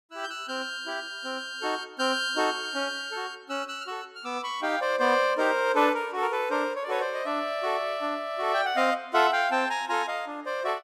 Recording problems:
none

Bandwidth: 15.5 kHz